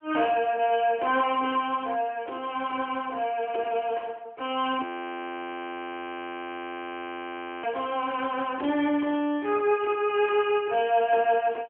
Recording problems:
telephone audio; 240 Hz to 3.3 kHz, AMR-NB
frozen audio; at 5 s for 3 s

